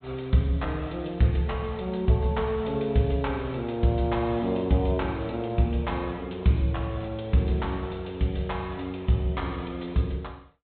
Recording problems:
treble cut off; nothing above 4 kHz

